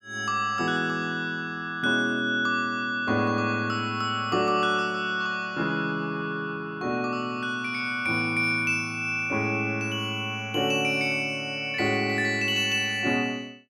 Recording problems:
none

